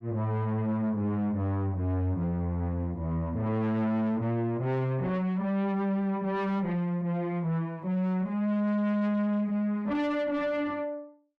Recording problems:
distortion; soft clipping, signal-to-distortion ratio 7 dB

